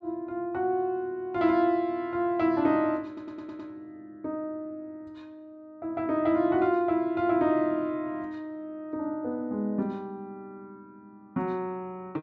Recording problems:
low-pass filter; nothing above 8 kHz
stutter; at 3 s

